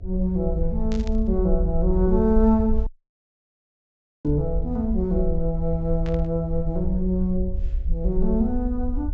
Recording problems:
low-pass filter; nothing above 8 kHz
hum; 60 Hz, harmonics up to 720 Hz, SNR 25 dB
rumble; below 58 Hz, SNR 4 dB
burst of static; at 1 s, at 4.5 s and at 6 s; peak -12 dB vs average level
dropout; at 3 s for 1.5 s

